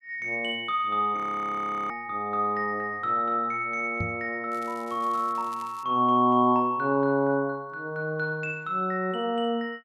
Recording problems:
frozen audio; at 1 s for 0.5 s
microphone thump; at 4 s; peak -1 dB vs average level
crackling; from 4.5 to 6 s; loose cable, SNR 25 dB

